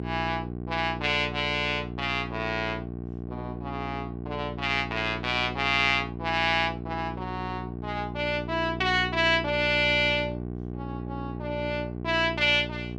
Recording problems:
hum; 60 Hz, harmonics up to 840 Hz, SNR 9 dB

